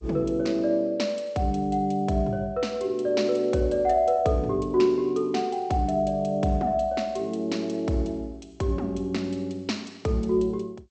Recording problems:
lossy compression; G.722, log-spectral distance 2 dB, nothing above 8 kHz

